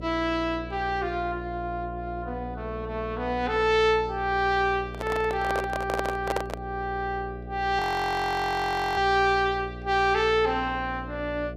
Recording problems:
hum; 60 Hz, harmonics up to 720 Hz, SNR 12 dB
microphone handling noise; from 5 to 6.5 s; peak +2 dB vs average level
audio freezing; at 8 s for 1 s

